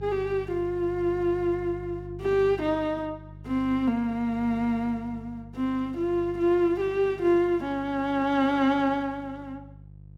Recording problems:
mains hum; 50 Hz, harmonics up to 350 Hz, SNR 17 dB

